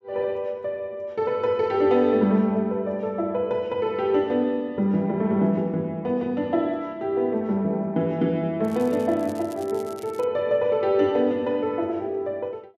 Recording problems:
crackling; from 8.5 to 10 s; loose cable, SNR 24 dB

